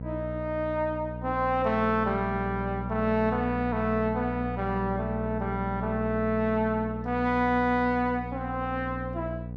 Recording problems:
hum; 60 Hz, harmonics up to 780 Hz, SNR 7 dB

